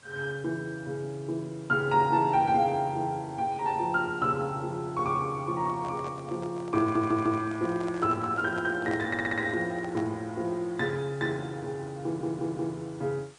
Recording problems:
codec artefacts; MP3, log-spectral distance 3 dB, nothing above 9.5 kHz
background hiss; slope -2 dB per octave, SNR 26 dB
handling noise; from 5.5 to 10 s; peak -7 dB vs average level
audio stuttering; at 7 s, at 9 s and at 12 s

